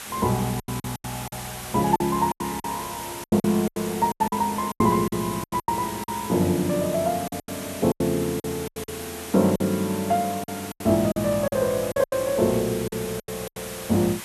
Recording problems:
background hiss; slope 0 dB per octave, SNR 11 dB
lost packets; 14% of the sound replaced, filled with silence

